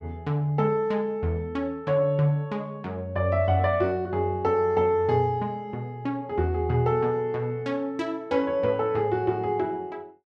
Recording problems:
none

